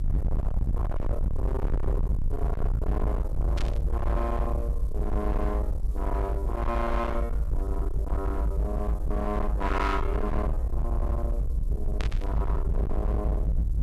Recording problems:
distorted audio; hard clipping, signal-to-distortion ratio 6 dB
hum; 50 Hz, harmonics up to 350 Hz, SNR 17 dB
hiss; slope 0 dB per octave, SNR 27 dB
rumble; below 60 Hz, SNR -4 dB
static burst; at 3.5 s and at 12 s; peak 0 dB vs average level

